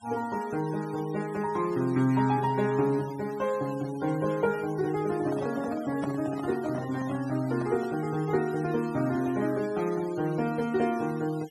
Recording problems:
denoising artefacts; signal-to-artefact ratio 19 dB
microphone handling noise; from 5 to 8 s; peak -3 dB vs average level

